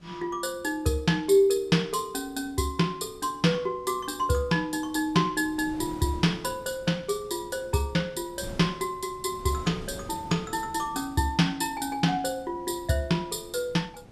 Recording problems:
wind noise; below 410 Hz, SNR 20 dB

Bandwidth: 12.5 kHz